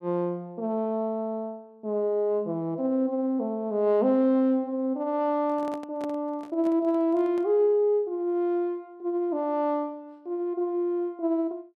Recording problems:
microphone handling noise; from 5.5 to 7.5 s; peak -10 dB vs average level

